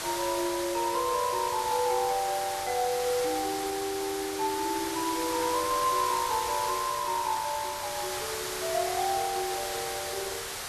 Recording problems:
background hiss; slope -1 dB per octave, SNR 4 dB

